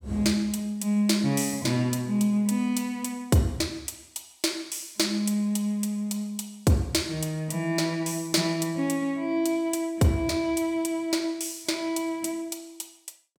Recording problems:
none

